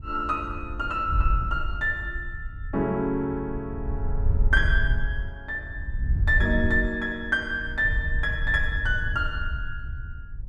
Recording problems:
wind on the microphone; below 72 Hz, SNR 3 dB

